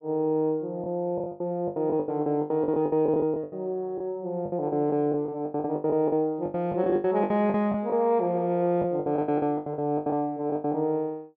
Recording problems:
packet loss; 18% of the sound replaced, filled with the last packet

